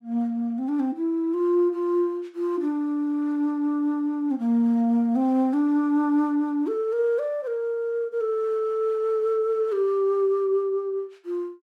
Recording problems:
none

